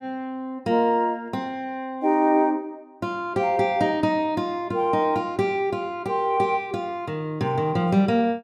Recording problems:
none

